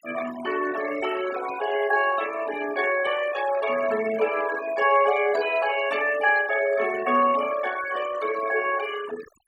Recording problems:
denoising artefacts; signal-to-artefact ratio 13 dB

